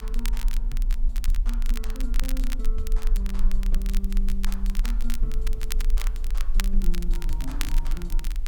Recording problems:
background hiss; slope -4 dB per octave, SNR 21 dB
low-frequency rumble; below 34 Hz, strongest tone 22 Hz, SNR -11 dB
wind noise; below 96 Hz, SNR 7 dB
crackle; vinyl, SNR 1 dB

